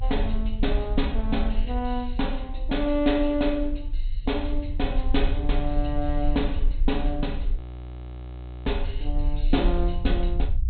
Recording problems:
treble missing; nothing above 4.1 kHz
low-frequency rumble; below 46 Hz, strongest tone 26 Hz, SNR 2 dB
audio freezing; at 7.5 s for 1 s

